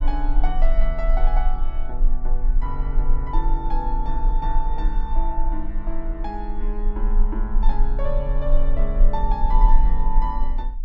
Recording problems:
rumble; below 32 Hz, strongest tone 20 Hz, SNR -6 dB

